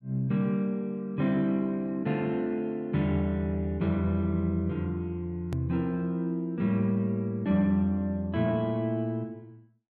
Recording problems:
hard cut with a click; at 5.5 s

